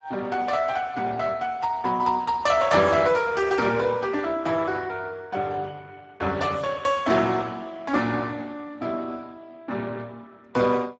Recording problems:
lossy compression; Speex, log-spectral distance 4 dB, nothing above 7.3 kHz

